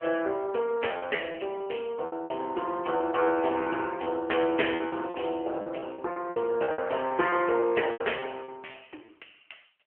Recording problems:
phone line; 280 Hz to 3.1 kHz, AMR-NB
lost packets; 11% of the sound replaced, filled with repeated pitch periods

